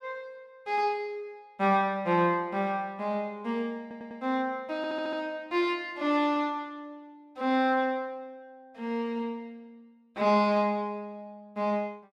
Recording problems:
stutter; at 4 s and at 5 s

